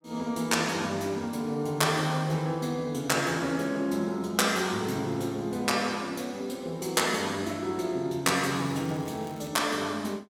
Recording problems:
crackle; from 8.5 to 9.5 s; loose cable, SNR 24 dB

